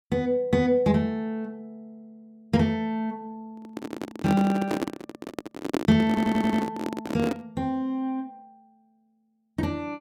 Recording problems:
handling noise; from 3.5 to 7.5 s; peak +3 dB vs average level
stutter; at 6 s

